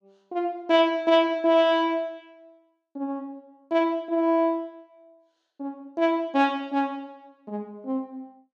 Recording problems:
none

